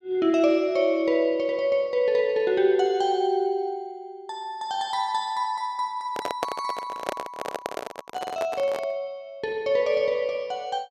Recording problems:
microphone handling noise; from 6 to 9 s; peak +1 dB vs average level

